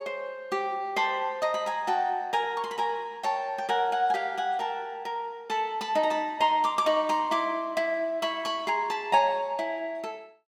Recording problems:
none

